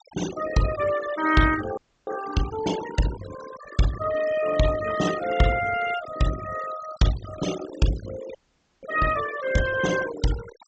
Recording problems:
treble missing; nothing above 8 kHz
noise reduction artefacts; signal-to-artefact ratio 11 dB
audio freezing; at 2 s and at 8.5 s

